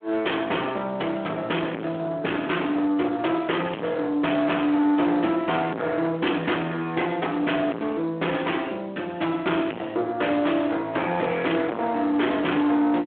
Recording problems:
phone line; 220 Hz to 3.4 kHz, Speex
distorted audio; soft clipping, signal-to-distortion ratio 6 dB

